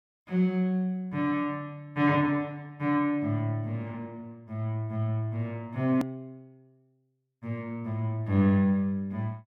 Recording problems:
edit click; at 6 s

